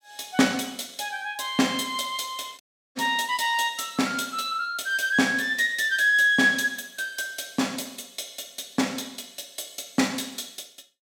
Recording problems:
audio cutting out; at 2.5 s

